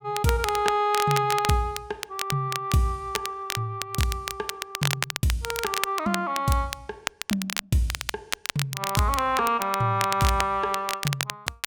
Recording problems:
crackle; vinyl, SNR 5 dB

